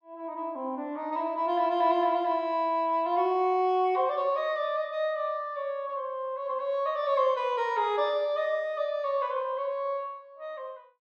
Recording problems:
none

